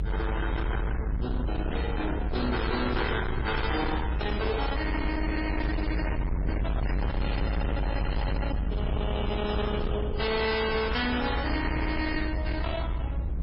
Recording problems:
codec artefacts; MP3, then AAC, log-spectral distance 3 dB, nothing above 5 kHz
distortion; hard clipping, signal-to-distortion ratio 6 dB
rumble; below 210 Hz, SNR 1 dB

